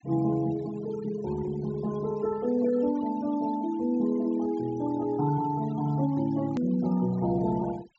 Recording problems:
treble cut off; nothing above 8 kHz
noise reduction artefacts; signal-to-artefact ratio 19 dB
click at an edit; at 6.5 s

